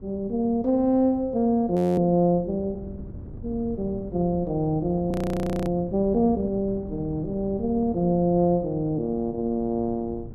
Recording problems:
wind on the microphone; below 210 Hz, SNR 16 dB
frozen audio; at 2 s and at 5 s for 0.5 s

